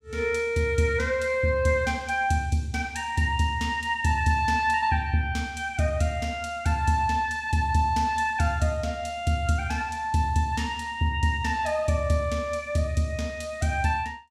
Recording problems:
none

